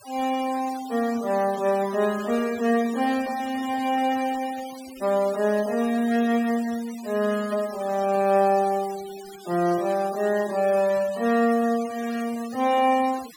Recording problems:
denoising artefacts; signal-to-artefact ratio 18 dB

